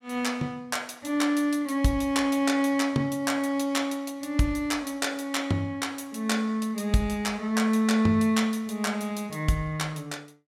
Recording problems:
none

